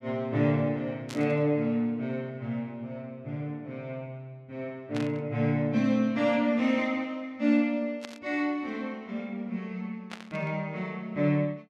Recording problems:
static burst; 4 times, first at 1 s; peak -6 dB vs average level

